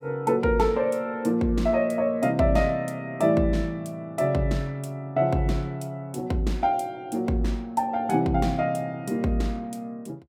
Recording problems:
none

